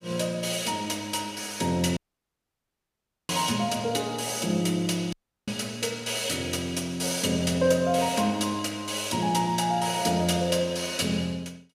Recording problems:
dropout; at 2 s for 1.5 s and at 5 s

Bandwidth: 15.5 kHz